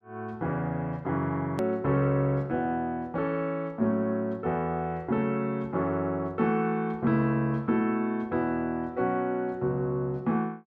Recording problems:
hard cut with a click; at 1.5 s

